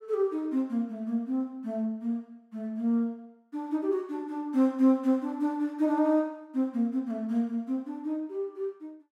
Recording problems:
none

